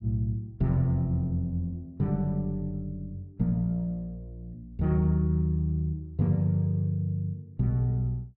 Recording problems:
none

